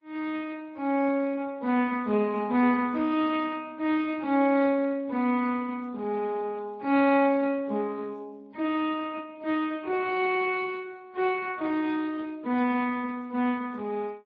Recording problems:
lossy codec; MP3, then Speex, log-spectral distance 2 dB

